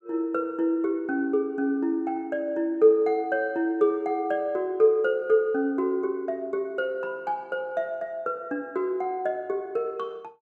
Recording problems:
none

